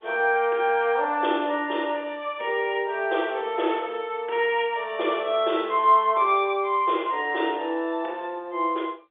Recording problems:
phone line; 300 Hz to 3.6 kHz, G.711

